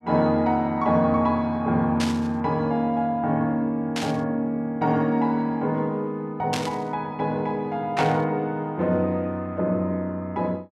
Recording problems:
static burst; 4 times, first at 2 s; peak 0 dB vs average level

